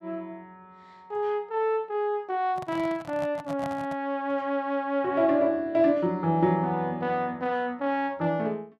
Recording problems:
microphone handling noise; from 2.5 to 4 s; peak -7 dB vs average level

